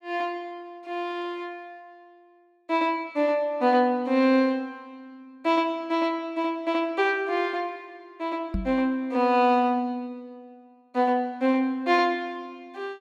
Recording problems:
knock on the microphone; at 8.5 s; peak 0 dB vs average level

